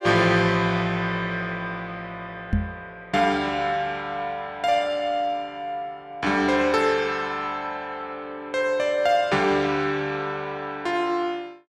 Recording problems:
microphone thump; at 2.5 s; peak +4 dB vs average level

